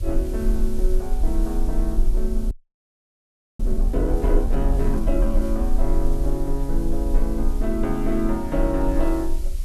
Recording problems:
hum; 60 Hz, harmonics up to 660 Hz, SNR 22 dB
hiss; slope +1 dB per octave, SNR 20 dB
low-frequency rumble; below 40 Hz, strongest tone 20 Hz, SNR -1 dB
audio freezing; at 2.5 s for 1 s

